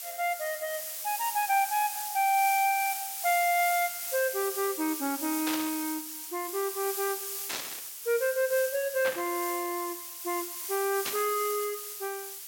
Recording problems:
hiss; slope +3 dB per octave, SNR 5 dB
static burst; 4 times, first at 5.5 s; peak 0 dB vs average level

